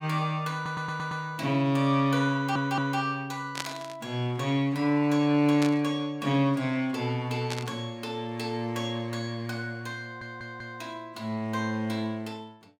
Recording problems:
stutter; at 0.5 s, at 2.5 s and at 10 s
burst of static; at 3.5 s, at 5.5 s and at 7.5 s; peak 0 dB vs average level

